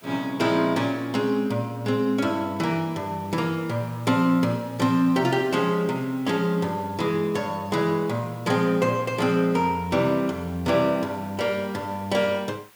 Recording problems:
background hiss; SNR 26 dB

